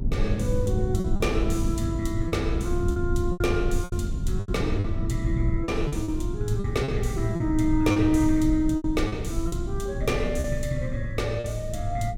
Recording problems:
rumble; below 110 Hz, strongest tone 22 Hz, SNR 3 dB
lost packets; 8% of the sound replaced, filled with repeated pitch periods

